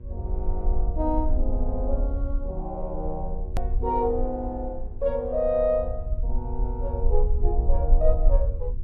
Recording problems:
hum; 60 Hz, harmonics up to 1.1 kHz, SNR 23 dB
rumble; below 50 Hz, SNR 0 dB
click at an edit; at 3.5 s

